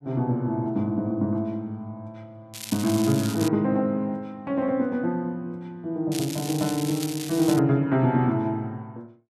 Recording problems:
crackle; at 2.5 s and from 6 to 7.5 s; loose cable, SNR 10 dB

